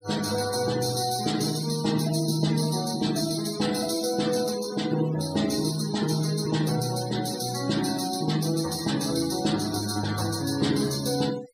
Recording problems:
noise reduction artefacts; signal-to-artefact ratio 13 dB

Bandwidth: 15.5 kHz